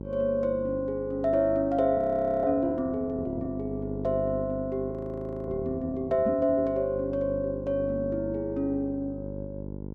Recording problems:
mains hum; 50 Hz, harmonics up to 950 Hz, SNR 10 dB
frozen audio; at 2 s and at 5 s for 0.5 s
microphone bump; at 6.5 s; peak 0 dB vs average level

